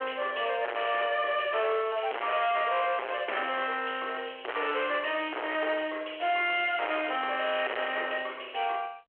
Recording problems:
phone line; 340 Hz to 3.4 kHz, G.726
distorted audio; hard clipping, uneven, signal-to-distortion ratio 6 dB

